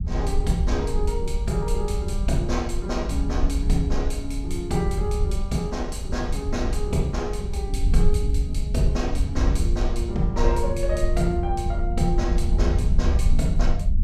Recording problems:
rumble; below 68 Hz, SNR -2 dB

